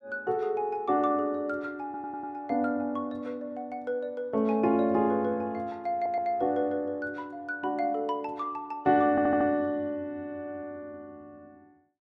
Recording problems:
stutter; at 2 s, at 6 s and at 9 s

